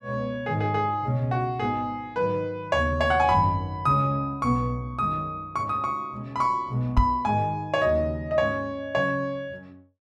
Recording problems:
knock on the microphone; at 7 s; peak +7 dB vs average level

